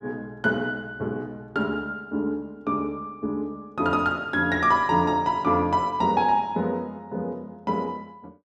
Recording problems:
none

